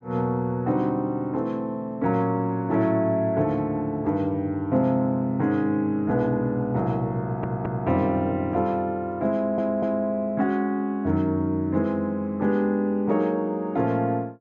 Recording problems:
treble missing; nothing above 8 kHz
audio stuttering; at 7 s and at 9.5 s

